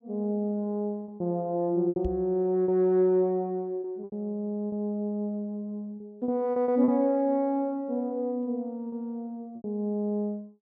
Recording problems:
packet loss; 7% of the sound replaced, filled with repeated pitch periods
knock on the microphone; at 2 s; peak -2 dB vs average level

